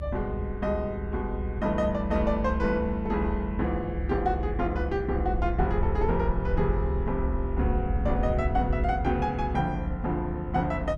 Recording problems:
electrical hum; 50 Hz, harmonics up to 450 Hz, SNR 15 dB
rumble; below 70 Hz, SNR 4 dB
wind on the microphone; below 130 Hz, SNR 11 dB

